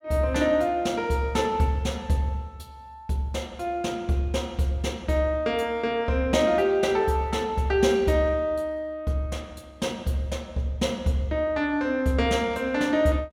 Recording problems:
none

